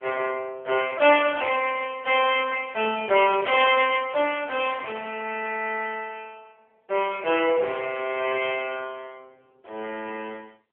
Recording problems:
phone line; 340 Hz to 3.3 kHz, AMR-NB

